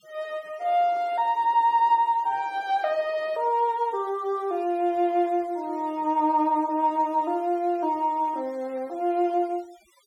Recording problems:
denoising artefacts; signal-to-artefact ratio 27 dB

